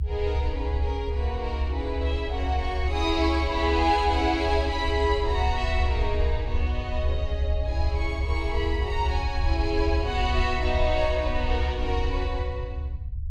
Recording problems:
low-frequency rumble; below 72 Hz, SNR 1 dB

